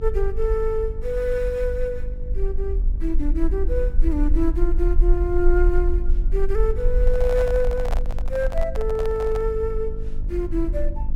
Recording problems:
hum; 50 Hz, harmonics up to 900 Hz, SNR 15 dB
rumble; below 44 Hz, strongest tone 20 Hz, SNR 0 dB
microphone handling noise; from 7 to 9.5 s; peak -1 dB vs average level

